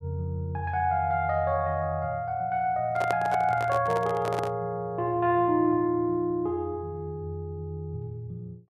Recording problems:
handling noise; from 3 to 4.5 s; peak 0 dB vs average level

